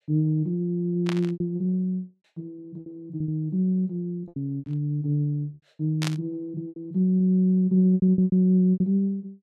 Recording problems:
lost packets; 10% of the sound replaced, filled with repeated pitch periods
burst of static; at 1 s, at 4.5 s and at 6 s; peak -3 dB vs average level

